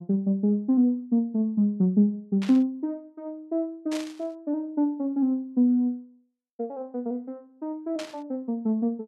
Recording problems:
static burst; at 2.5 s, at 4 s and at 8 s; peak -7 dB vs average level

